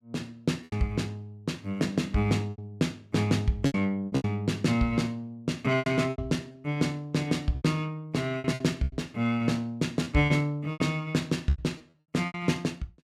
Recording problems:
lost packets; 9% of the sound replaced, filled with repeated pitch periods

